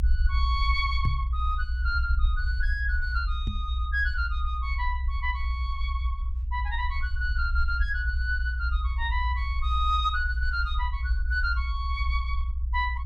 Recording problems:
low-frequency rumble; below 62 Hz, strongest tone 62 Hz, SNR -1 dB
knock on the microphone; at 1 s and at 3.5 s; peak +6 dB vs average level

